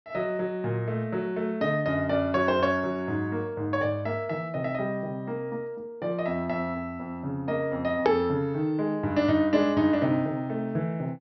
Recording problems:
treble missing; nothing above 5.9 kHz
edit click; at 8 s

